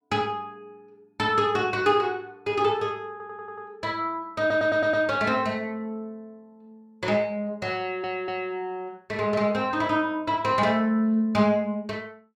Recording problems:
stutter; at 3 s, at 4.5 s and at 8 s

